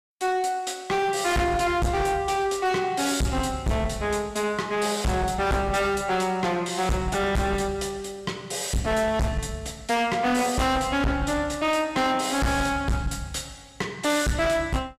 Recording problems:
distorted audio; hard clipping, uneven, signal-to-distortion ratio 6 dB

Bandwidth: 15 kHz